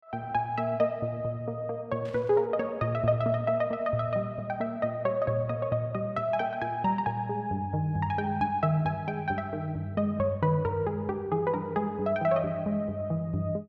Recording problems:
burst of static; at 2 s; peak -17 dB vs average level

